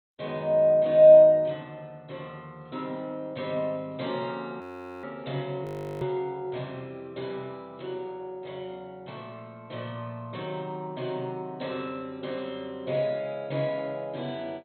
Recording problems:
lossy compression; MP2, log-spectral distance 2 dB
frozen audio; at 4.5 s and at 5.5 s

